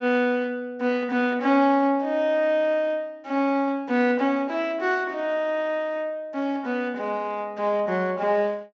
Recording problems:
low-pass filter; nothing above 7.4 kHz

